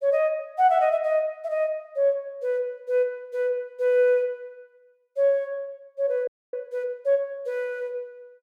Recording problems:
audio freezing; at 6.5 s

